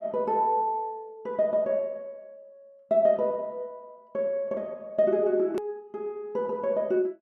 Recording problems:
edit click; at 5.5 s

